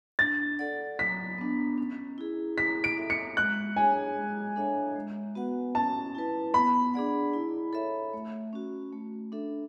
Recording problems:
none

